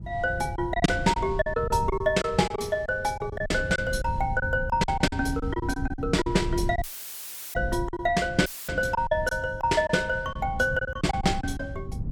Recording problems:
wind noise; below 130 Hz, SNR 9 dB
packet loss; 11% of the sound replaced, filled with silence
audio cutting out; at 7 s for 0.5 s and at 8.5 s; filled with static

